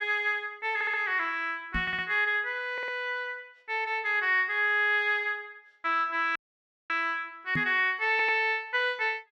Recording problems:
audio stuttering; 4 times, first at 0.5 s
knock on the microphone; at 2 s and at 7.5 s; peak -2 dB vs average level
dropout; at 6.5 s for 0.5 s

